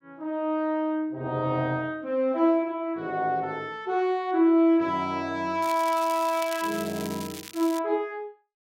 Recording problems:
crackle; from 5.5 to 8 s; loose cable, SNR 14 dB

